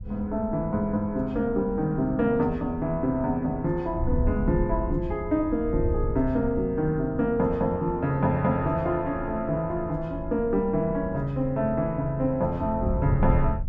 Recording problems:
wind on the microphone; below 98 Hz, SNR 9 dB

